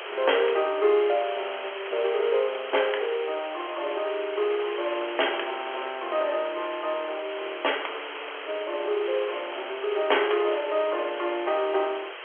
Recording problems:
phone line; 320 Hz to 3.3 kHz, G.711
background hiss; SNR 9 dB

